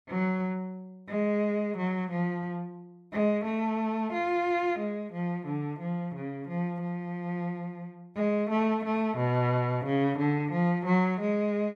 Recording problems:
none

